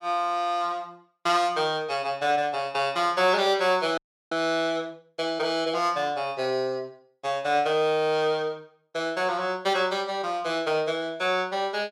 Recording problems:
frozen audio; at 4 s

